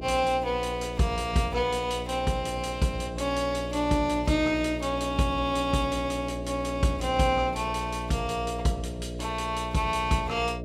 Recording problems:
hum; 60 Hz, harmonics up to 660 Hz, SNR 9 dB

